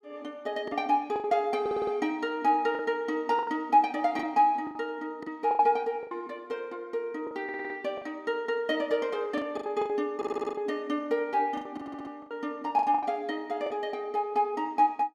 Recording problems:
lost packets; 9% of the sound replaced, filled with the last packet
stutter; 4 times, first at 1.5 s

